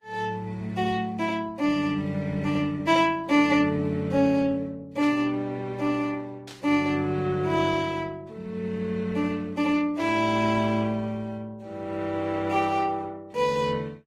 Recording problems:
codec artefacts; Opus, then Vorbis, log-spectral distance 2 dB, nothing above 15.1 kHz
burst of static; at 5 s, at 6.5 s and at 10 s; peak -13 dB vs average level

